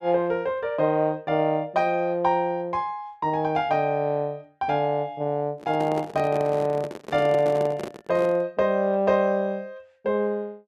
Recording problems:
handling noise; from 5.5 to 8.5 s; peak -5 dB vs average level

